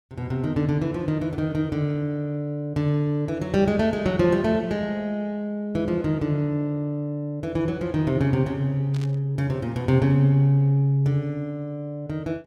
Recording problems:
static burst; at 9 s; peak -14 dB vs average level

